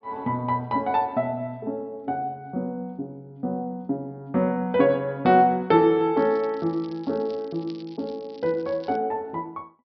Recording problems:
treble cut off; nothing above 5.5 kHz
crackling; from 6 to 9 s; loose cable, SNR 27 dB

